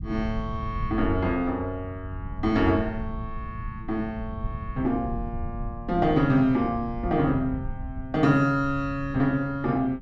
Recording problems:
low-frequency rumble; below 100 Hz, SNR 11 dB

